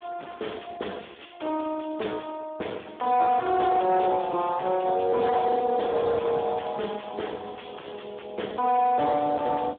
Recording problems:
phone line; 260 Hz to 3.6 kHz, Speex
distorted audio; soft clipping, signal-to-distortion ratio 9 dB

